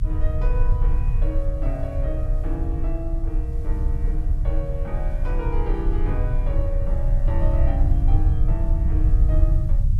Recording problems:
background hiss; slope -2 dB per octave, SNR 26 dB
low-frequency rumble; below 64 Hz, strongest tone 32 Hz, SNR -9 dB

